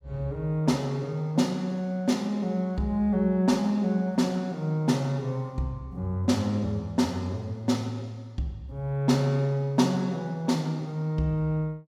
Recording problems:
none

